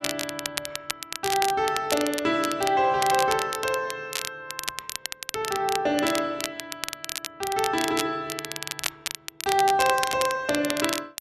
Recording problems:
crackling; vinyl, SNR 6 dB

